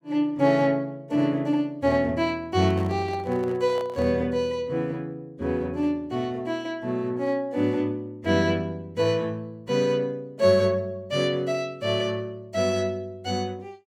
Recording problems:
handling noise; from 2.5 to 4 s; peak -10 dB vs average level

